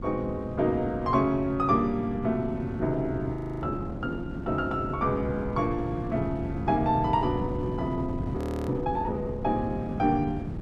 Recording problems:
wind noise; below 260 Hz, SNR 7 dB
frozen audio; at 3.5 s and at 8.5 s

